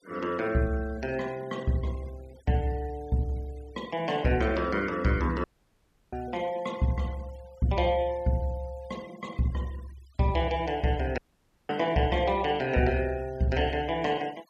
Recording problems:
noise reduction artefacts; signal-to-artefact ratio 23 dB
dropout; at 5.5 s for 0.5 s and at 11 s for 0.5 s

